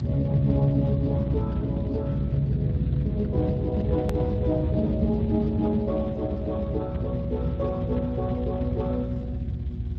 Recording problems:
lossy codec; Speex, log-spectral distance 2 dB
hum; 60 Hz, harmonics up to 720 Hz, SNR 11 dB
rumble; below 170 Hz, SNR 2 dB
click at an edit; at 4 s

